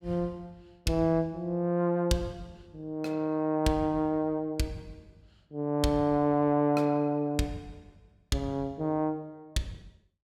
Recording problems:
none

